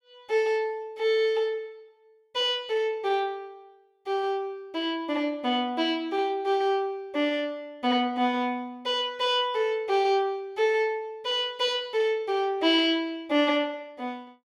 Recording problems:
none

